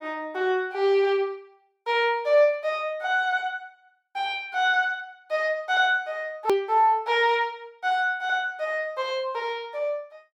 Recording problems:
click at an edit; at 6.5 s

